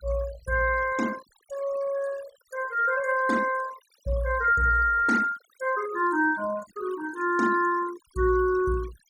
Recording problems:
denoising artefacts; signal-to-artefact ratio 17 dB

